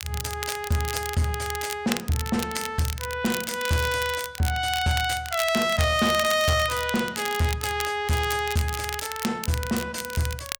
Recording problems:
distortion; soft clipping, signal-to-distortion ratio 12 dB
crackling; vinyl, SNR 9 dB

